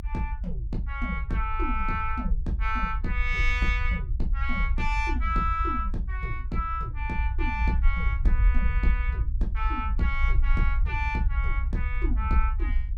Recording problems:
low-frequency rumble; below 60 Hz, SNR -2 dB

